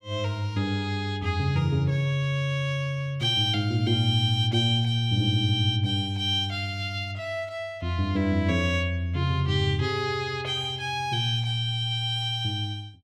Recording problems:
none

